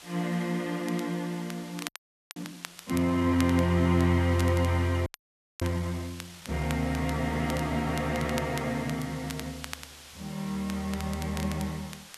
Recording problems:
background hiss; slope 0 dB per octave, SNR 18 dB
crackling; vinyl, SNR 15 dB
audio freezing; at 2 s and at 5 s for 0.5 s

